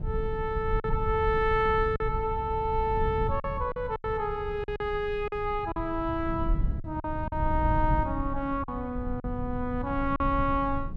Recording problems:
rumble; below 110 Hz, SNR 6 dB
packet loss; 6% of the sound replaced, filled with silence

